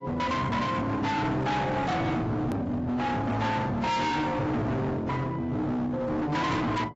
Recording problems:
lossy compression; AAC, log-spectral distance 2 dB, nothing above 13.1 kHz
distorted audio; hard clipping, signal-to-distortion ratio 6 dB
edit click; at 2.5 s

